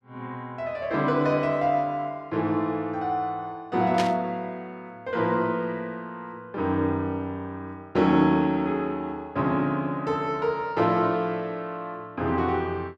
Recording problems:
burst of static; at 4 s; peak 0 dB vs average level

